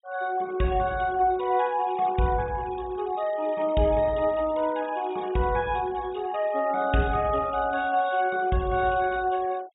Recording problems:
treble missing; nothing above 4 kHz
noise reduction artefacts; signal-to-artefact ratio 20 dB

